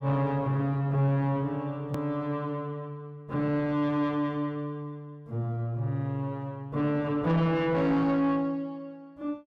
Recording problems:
distorted audio; soft clipping, signal-to-distortion ratio 11 dB
click at an edit; at 2 s

